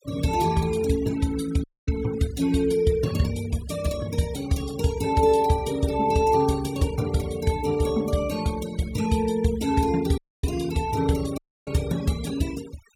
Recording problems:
noise reduction artefacts; signal-to-artefact ratio 18 dB
audio cutting out; at 1.5 s, at 10 s and at 11 s

